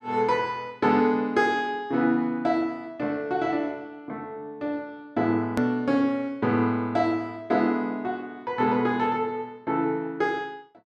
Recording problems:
click at an edit; at 5.5 s

